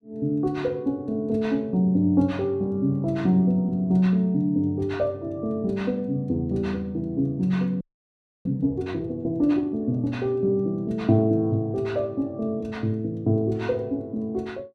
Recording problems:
frozen audio; at 8 s for 0.5 s

